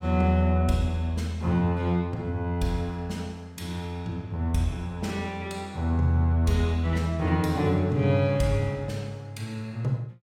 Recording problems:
none

